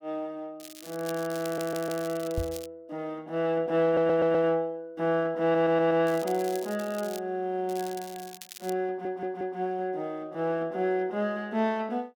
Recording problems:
crackle; from 0.5 to 2.5 s, from 6 to 7 s and from 7.5 to 8.5 s; loose cable, SNR 16 dB
stutter; 4 times, first at 1.5 s
microphone thump; at 2.5 s; peak 0 dB vs average level

